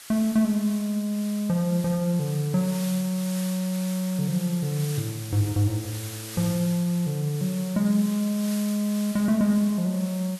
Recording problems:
background hiss; slope +2 dB per octave, SNR 13 dB

